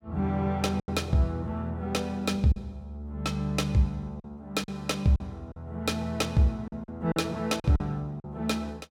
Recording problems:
lost packets; 6% of the sound replaced, filled with silence

